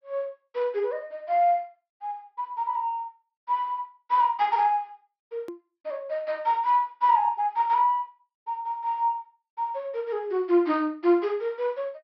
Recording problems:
treble cut off; nothing above 5.5 kHz
edit click; at 5.5 s

